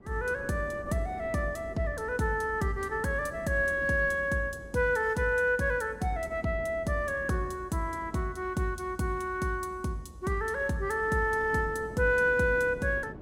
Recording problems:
wind on the microphone; below 440 Hz, SNR 18 dB

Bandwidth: 16.5 kHz